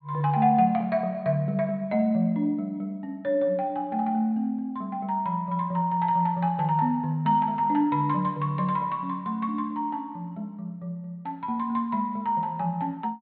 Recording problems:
treble missing; nothing above 4.4 kHz

